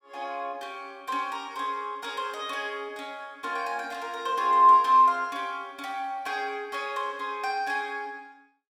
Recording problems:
none

